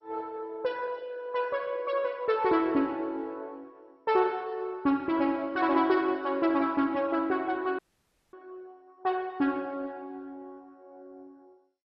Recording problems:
lossy codec; MP2, log-spectral distance 2 dB, nothing above 5.5 kHz
audio cutting out; at 8 s for 0.5 s

